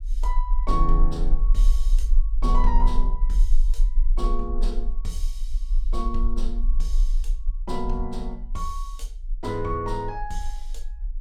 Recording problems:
rumble; below 36 Hz, SNR -5 dB

